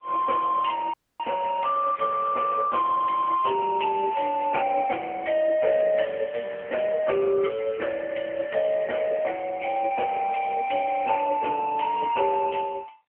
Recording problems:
telephone audio; 340 Hz to 3.1 kHz, AMR-NB
dropout; at 1 s

